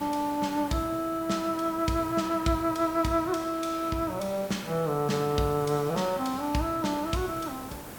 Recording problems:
hiss; slope -6 dB per octave, SNR 15 dB

